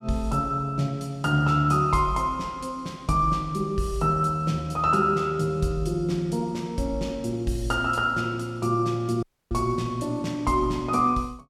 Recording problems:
dropout; at 9 s

